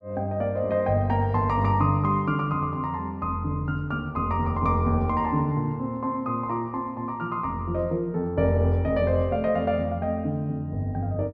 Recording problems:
none

